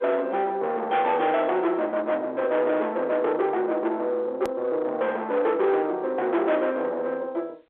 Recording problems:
telephone audio; 970 Hz to 3.2 kHz, G.711
distortion; soft clipping, signal-to-distortion ratio 9 dB
click at an edit; at 4.5 s

